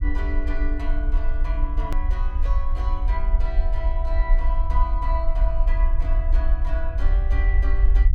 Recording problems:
low-frequency rumble; below 50 Hz, SNR -10 dB
click at an edit; at 2 s

